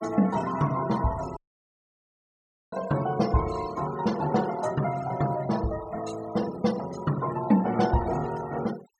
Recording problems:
denoising artefacts; signal-to-artefact ratio 16 dB
dropout; at 1.5 s for 1.5 s

